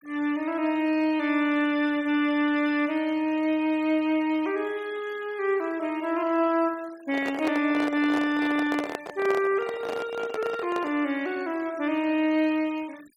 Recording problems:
denoising artefacts; signal-to-artefact ratio 23 dB
handling noise; from 7 to 11 s; peak -2 dB vs average level

